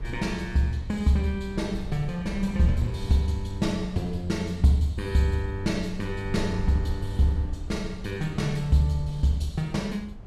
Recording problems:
low-frequency rumble; below 86 Hz, SNR 12 dB

